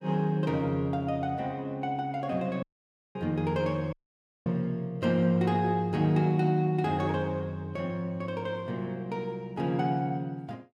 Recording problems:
audio cutting out; at 2.5 s for 0.5 s and at 4 s for 0.5 s

